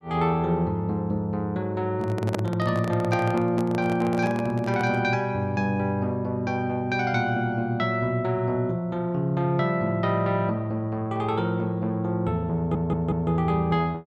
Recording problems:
handling noise; from 2 to 5 s; peak +1 dB vs average level
audio stuttering; at 13 s

